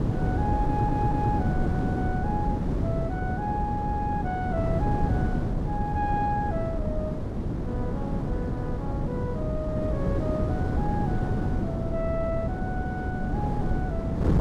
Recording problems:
wind on the microphone; below 270 Hz, SNR -5 dB
stutter; at 0.5 s

